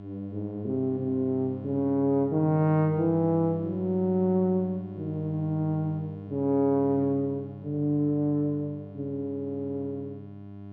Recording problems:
electrical hum; 50 Hz, harmonics up to 1 kHz, SNR 13 dB

